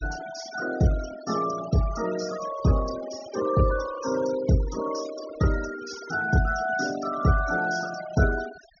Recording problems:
treble missing; nothing above 6.6 kHz
denoising artefacts; signal-to-artefact ratio 13 dB

